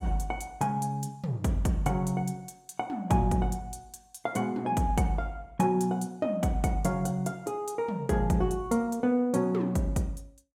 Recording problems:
none

